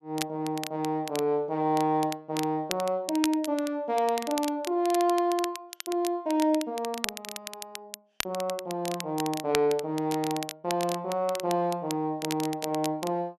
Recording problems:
crackle; vinyl, SNR 10 dB

